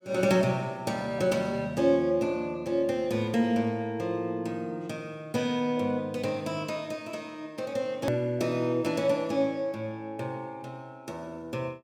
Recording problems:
hard cut with a click; at 8 s

